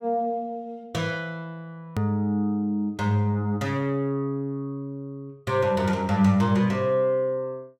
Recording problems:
hard cut with a click; at 2 s

